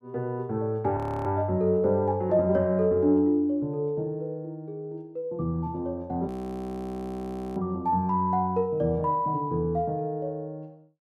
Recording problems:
frozen audio; at 1 s and at 6.5 s for 1.5 s

